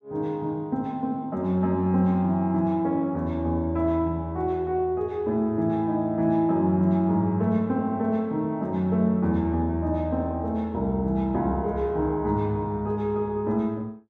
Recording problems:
none

